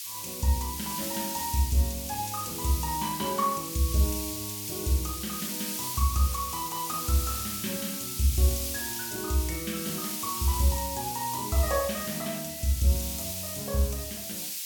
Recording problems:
background hiss; SNR 3 dB

